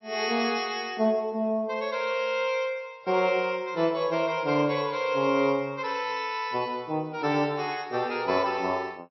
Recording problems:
lossy codec; MP3, log-spectral distance 3 dB, nothing above 4.9 kHz

